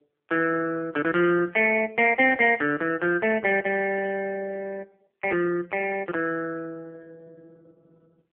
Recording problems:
phone line; 240 Hz to 3.2 kHz, AMR-NB

